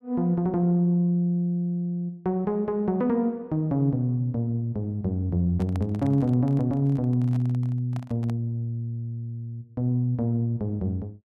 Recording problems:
handling noise; from 5.5 to 8.5 s; peak -9 dB vs average level

